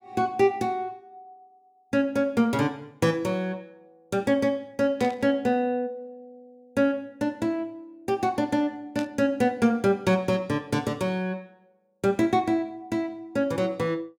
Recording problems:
static burst; at 5 s and at 9 s; peak -9 dB vs average level

